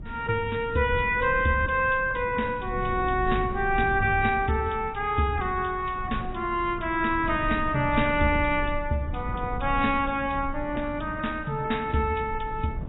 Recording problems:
codec artefacts; AAC, log-spectral distance 3 dB, nothing above 3.8 kHz
wind noise; below 120 Hz, SNR 11 dB

